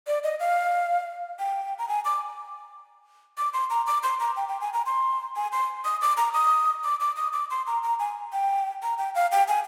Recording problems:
none

